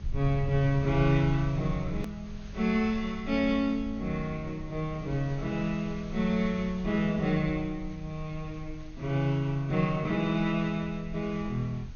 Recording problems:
treble cut off; nothing above 6.6 kHz
hiss; slope -2 dB per octave, SNR 24 dB
low-frequency rumble; below 80 Hz, strongest tone 22 Hz, SNR 13 dB
hard cut with a click; at 2 s

